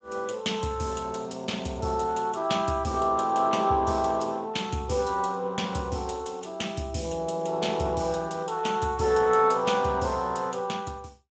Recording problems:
lossy codec; Speex, log-spectral distance 4 dB, nothing above 7.6 kHz

